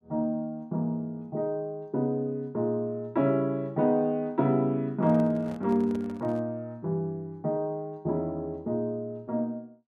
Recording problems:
microphone handling noise; from 5 to 6.5 s; peak -10 dB vs average level

